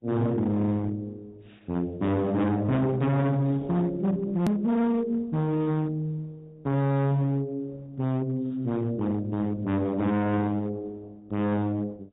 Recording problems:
treble missing; nothing above 4 kHz
lossy compression; Opus, log-spectral distance 2 dB
distortion; hard clipping, signal-to-distortion ratio 6 dB
edit click; at 4.5 s

